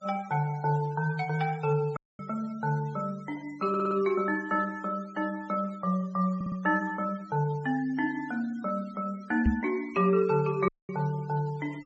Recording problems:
low-pass filter; nothing above 8 kHz
denoising artefacts; signal-to-artefact ratio 24 dB
audio cutting out; at 2 s and at 11 s
audio stuttering; at 3.5 s and at 6.5 s
microphone bump; at 9.5 s; peak +7 dB vs average level

